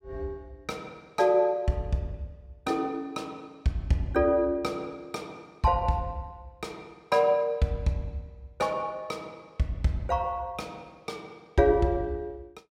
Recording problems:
none

